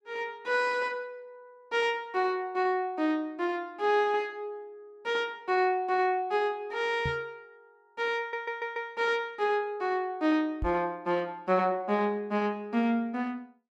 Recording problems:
microphone bump; at 7 s and at 11 s; peak -1 dB vs average level
audio stuttering; at 8 s

